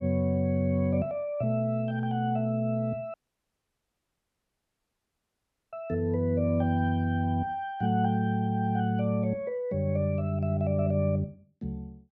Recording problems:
audio cutting out; at 3 s for 2.5 s

